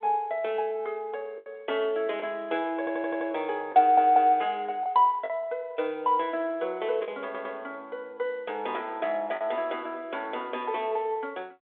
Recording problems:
phone line; 340 Hz to 3.8 kHz, G.726
packet loss; 2% of the sound replaced, filled with the last packet
audio stuttering; at 3 s, at 4 s and at 7 s

